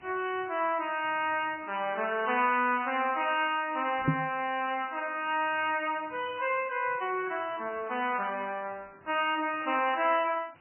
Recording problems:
lossy codec; MP3, log-spectral distance 10 dB, nothing above 2.7 kHz
background hiss; SNR 28 dB
knock on the microphone; at 4 s; peak +8 dB vs average level

